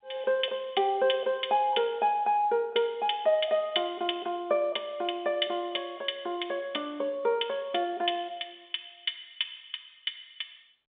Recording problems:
telephone audio; 300 Hz to 3.6 kHz, G.711

